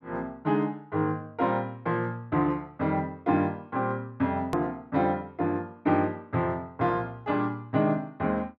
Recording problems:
hard cut with a click; at 4.5 s

